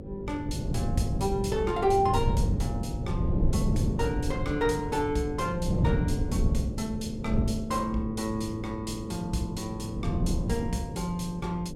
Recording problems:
hum; 50 Hz, harmonics up to 550 Hz, SNR 11 dB
wind on the microphone; below 170 Hz, SNR 1 dB

